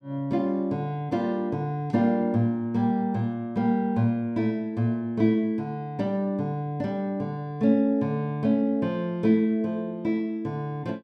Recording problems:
none

